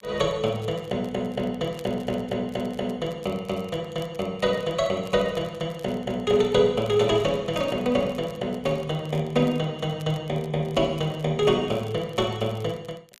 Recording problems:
crackle; vinyl, SNR 27 dB

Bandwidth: 14.5 kHz